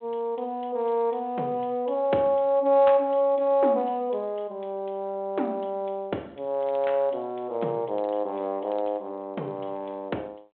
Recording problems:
phone line; 240 Hz to 3.3 kHz, G.726

